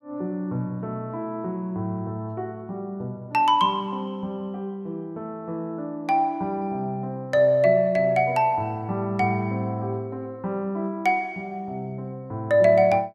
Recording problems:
none

